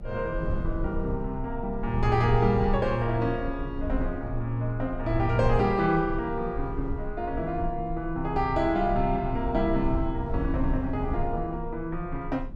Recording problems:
low-frequency rumble; below 86 Hz, SNR 7 dB

